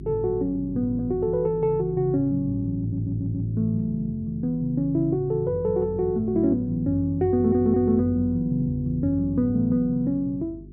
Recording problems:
hum; 50 Hz, harmonics up to 400 Hz, SNR 16 dB
stutter; at 3 s and at 7.5 s

